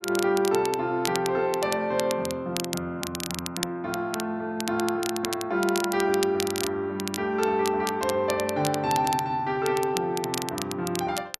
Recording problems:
crackling; vinyl, SNR 8 dB

